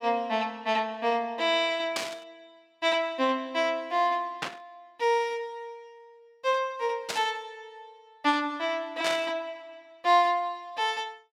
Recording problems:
burst of static; 4 times, first at 2 s; peak +1 dB vs average level

